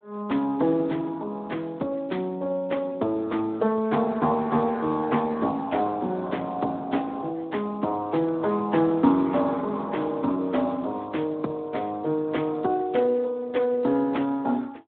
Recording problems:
phone line; 170 Hz to 3.6 kHz, Speex

